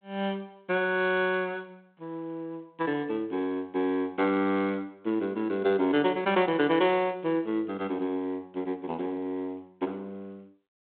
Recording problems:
telephone audio; 170 Hz to 3.7 kHz, G.726

